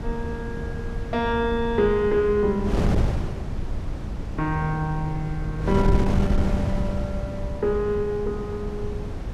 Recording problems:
wind noise; below 180 Hz, SNR 3 dB

